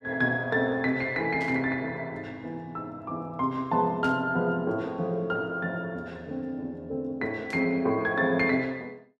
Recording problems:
burst of static; at 1.5 s, at 4 s and at 7.5 s; peak -12 dB vs average level

